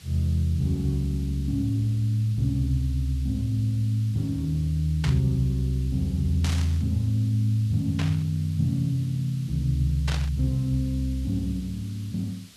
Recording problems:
background hiss; SNR 24 dB
burst of static; 4 times, first at 5 s; peak -3 dB vs average level

